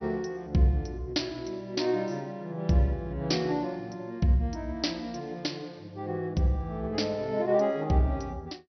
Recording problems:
lossy compression; MP2, log-spectral distance 3 dB, nothing above 5.8 kHz

